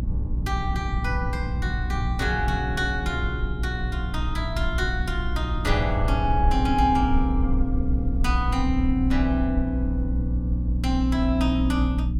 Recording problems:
hum; 60 Hz, harmonics up to 300 Hz, SNR 2 dB
rumble; below 56 Hz, SNR 5 dB
wind noise; below 140 Hz, SNR 11 dB

